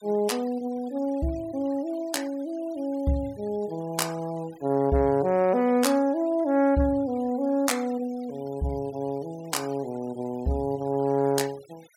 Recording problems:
denoising artefacts; signal-to-artefact ratio 24 dB

